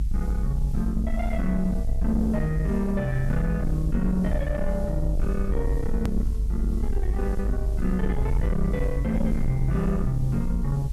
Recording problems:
distorted audio; soft clipping, signal-to-distortion ratio 10 dB
background hiss; slope +1 dB per octave, SNR 27 dB
low-frequency rumble; below 60 Hz, SNR 1 dB
hard cut with a click; at 6 s

